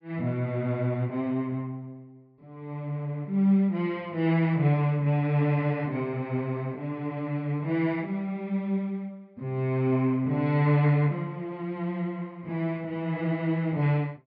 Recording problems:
treble cut off; nothing above 5.5 kHz

